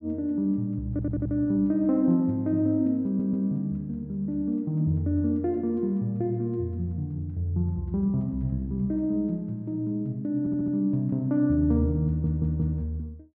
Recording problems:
stutter; 4 times, first at 1 s

